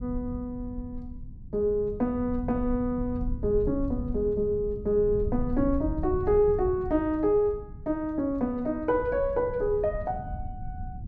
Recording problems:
rumble; below 110 Hz, SNR 10 dB

